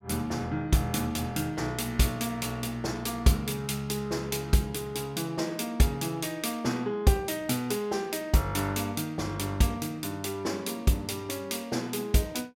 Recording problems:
none

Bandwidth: 16.5 kHz